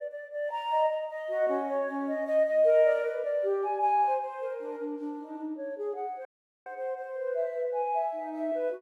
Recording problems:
dropout; at 6.5 s

